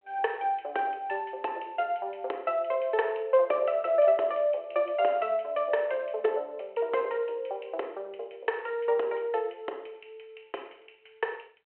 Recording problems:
telephone audio; 340 Hz to 3.5 kHz, G.726

